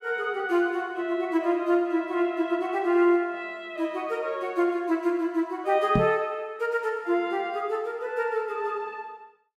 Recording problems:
microphone bump; at 6 s; peak +5 dB vs average level

